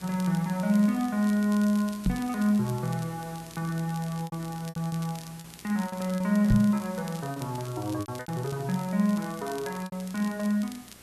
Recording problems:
electrical hum; 60 Hz, harmonics up to 1.2 kHz, SNR 27 dB
hiss; slope -2 dB per octave, SNR 20 dB
crackle; vinyl, SNR 20 dB
lost packets; 6% of the sound replaced, filled with repeated pitch periods
knock on the microphone; at 2 s and at 6.5 s; peak +7 dB vs average level

